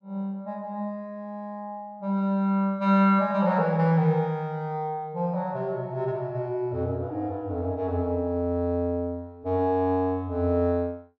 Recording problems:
none

